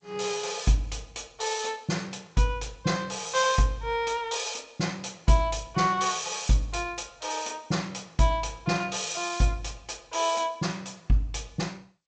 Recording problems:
codec artefacts; G.722, log-spectral distance 5 dB, nothing above 7.8 kHz

